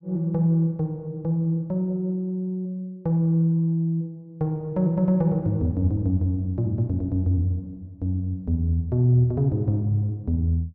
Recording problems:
none

